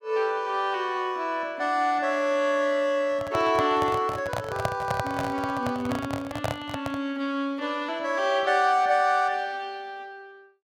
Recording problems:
handling noise; from 3 to 7 s; peak +2 dB vs average level

